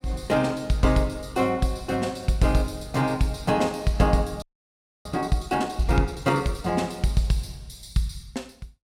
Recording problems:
audio freezing; at 4.5 s for 0.5 s

